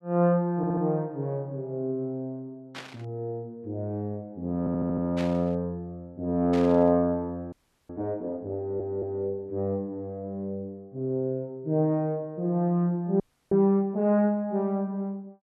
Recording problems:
audio stuttering; at 0.5 s, at 4.5 s and at 8.5 s
static burst; at 2.5 s, at 5 s and at 6.5 s; peak -7 dB vs average level
audio freezing; at 7.5 s and at 13 s

